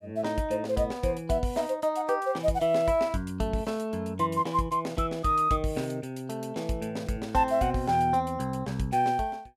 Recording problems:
none

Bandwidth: 15.5 kHz